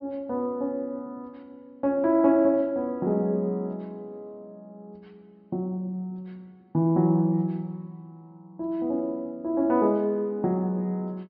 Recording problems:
treble cut off; nothing above 5.5 kHz

